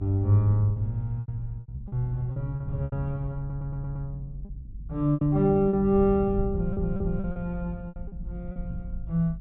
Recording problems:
treble cut off; nothing above 4 kHz
rumble; below 110 Hz, SNR 10 dB
lost packets; 11% of the sound replaced, filled with repeated pitch periods
stutter; at 3.5 s and at 6.5 s

